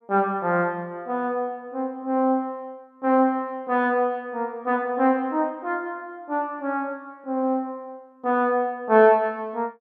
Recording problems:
none

